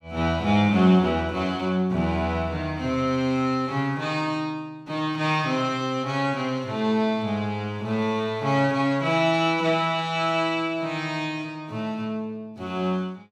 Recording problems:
none

